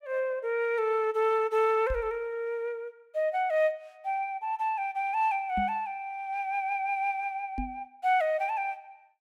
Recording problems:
knock on the microphone; at 2 s, at 5.5 s and at 7.5 s; peak -2 dB vs average level

